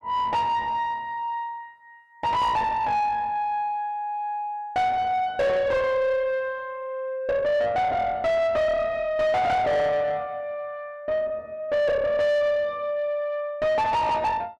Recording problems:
distorted audio; soft clipping, signal-to-distortion ratio 6 dB

